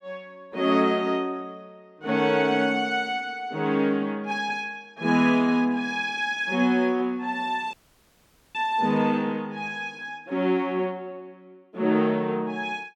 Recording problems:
audio cutting out; at 7.5 s for 1 s

